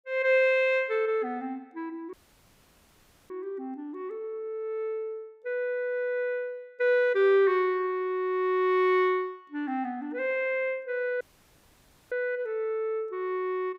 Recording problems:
audio cutting out; at 2 s for 1 s and at 11 s for 1 s

